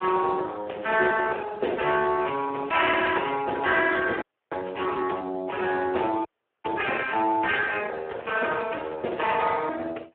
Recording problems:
telephone audio; 280 Hz to 3.3 kHz, Speex
frozen audio; at 4 s and at 6.5 s

